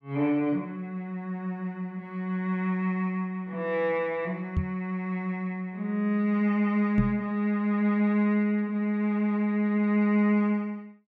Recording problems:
microphone thump; at 4.5 s and at 7 s; peak +4 dB vs average level

